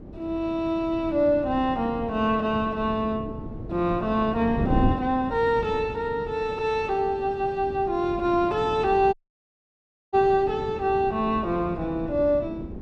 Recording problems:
wind noise; below 310 Hz, SNR 10 dB
audio cutting out; at 9 s for 1 s

